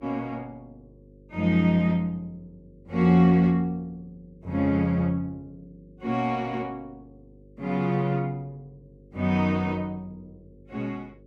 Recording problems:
hum; 50 Hz, harmonics up to 550 Hz, SNR 27 dB

